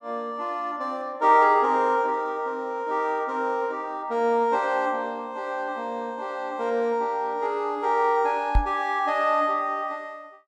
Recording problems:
knock on the microphone; at 8.5 s; peak +5 dB vs average level

